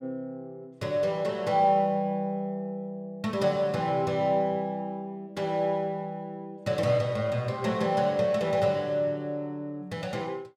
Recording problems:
none

